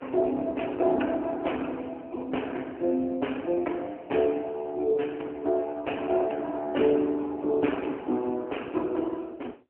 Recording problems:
phone line; 260 Hz to 3.1 kHz, AMR-NB

